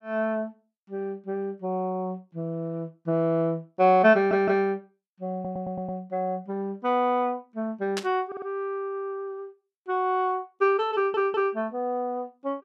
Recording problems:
audio stuttering; 4 times, first at 4 s
static burst; at 8 s; peak -1 dB vs average level

